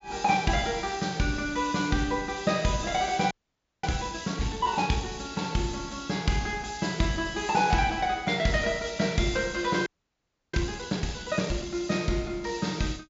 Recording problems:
treble missing; nothing above 7.4 kHz
frozen audio; at 3.5 s for 0.5 s and at 10 s for 0.5 s

